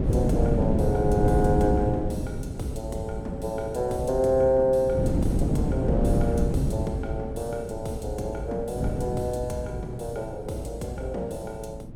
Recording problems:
wind on the microphone; below 260 Hz, SNR 0 dB

